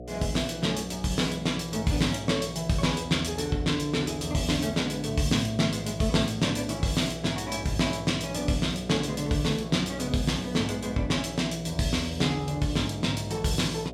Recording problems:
hum; 60 Hz, harmonics up to 720 Hz, SNR 13 dB

